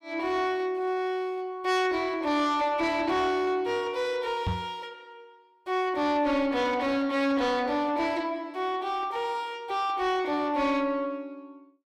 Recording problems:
distortion; soft clipping, signal-to-distortion ratio 11 dB
knock on the microphone; at 4.5 s; peak +1 dB vs average level

